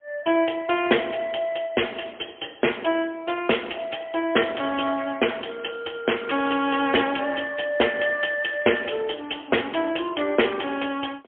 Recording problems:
telephone audio; 260 Hz to 3.3 kHz, AMR-NB, then MP3

